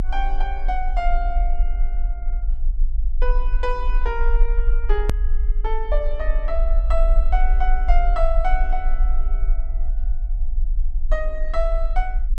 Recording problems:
low-frequency rumble; below 38 Hz, strongest tone 20 Hz, SNR -4 dB
click at an edit; at 5 s

